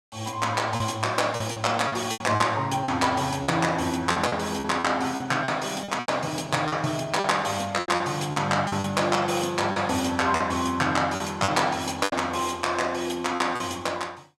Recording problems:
packet loss; 10% of the sound replaced, filled with repeated pitch periods

